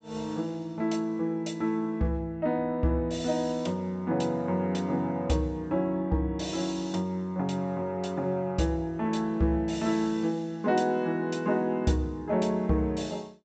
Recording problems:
low-pass filter; nothing above 8 kHz

